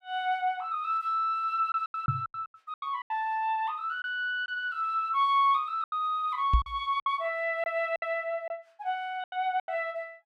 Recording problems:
packet loss; 9% of the sound replaced, filled with silence
microphone bump; at 2 s and at 6.5 s; peak +8 dB vs average level

